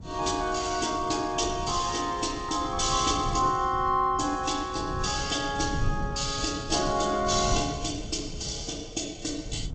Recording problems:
lossy compression; AAC, then G.722, log-spectral distance 8 dB, nothing above 7.8 kHz
low-frequency rumble; below 150 Hz, SNR 11 dB

